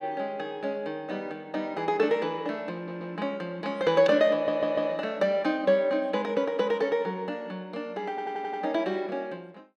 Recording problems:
stutter; at 3 s, at 4.5 s and at 8 s

